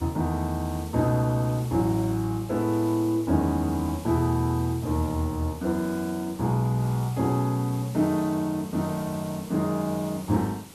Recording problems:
hiss; SNR 18 dB

